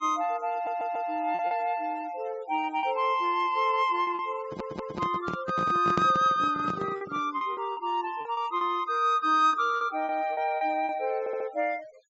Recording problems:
low-pass filter; nothing above 8 kHz
denoising artefacts; signal-to-artefact ratio 25 dB
lost packets; 7% of the sound replaced, filled with repeated pitch periods
audio stuttering; at 0.5 s, at 4.5 s and at 11 s
microphone handling noise; from 4.5 to 7 s; peak +2 dB vs average level

